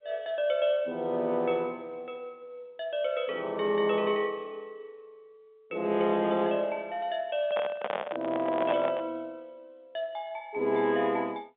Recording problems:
phone line; 220 Hz to 3.6 kHz, G.711
microphone handling noise; from 7.5 to 9 s; peak +2 dB vs average level

